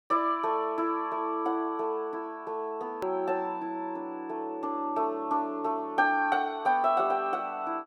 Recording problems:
edit click; at 3 s

